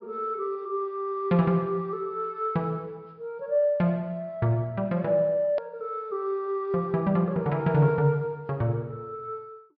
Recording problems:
low-pass filter; nothing above 5.5 kHz
click at an edit; at 5.5 s

